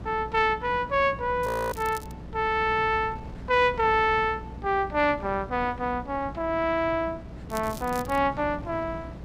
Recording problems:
hum; 60 Hz, harmonics up to 600 Hz, SNR 18 dB
wind noise; below 340 Hz, SNR 16 dB
crackle; at 1.5 s and at 7.5 s; loose cable, SNR 19 dB
audio freezing; at 1.5 s

